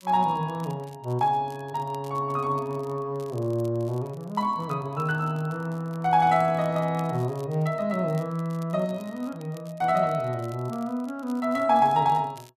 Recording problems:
crackling; vinyl, SNR 27 dB

